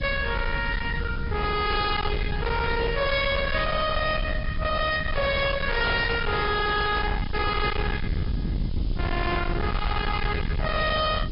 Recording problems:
treble cut off; nothing above 4.9 kHz
lossy codec; AAC, log-spectral distance 3 dB
distortion; hard clipping, signal-to-distortion ratio 6 dB
background hiss; SNR 23 dB
rumble; below 420 Hz, SNR 4 dB
microphone handling noise; from 5 to 7 s; peak -3 dB vs average level

